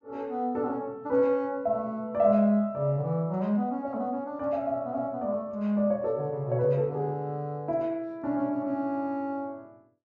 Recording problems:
treble cut off; nothing above 8 kHz

